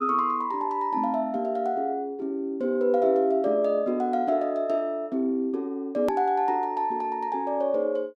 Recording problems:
edit click; at 6 s

